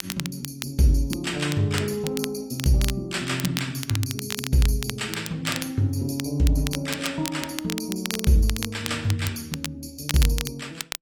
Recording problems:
lossy compression; AAC, log-spectral distance 3 dB, nothing above 15.1 kHz
crackle; vinyl, SNR 8 dB

